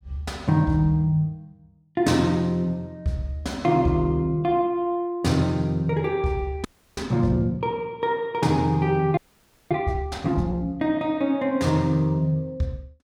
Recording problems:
frozen audio; at 6.5 s and at 9 s for 0.5 s

